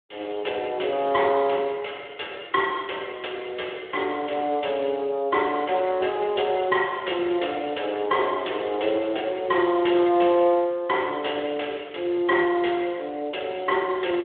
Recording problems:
phone line; 300 Hz to 3.6 kHz, Speex

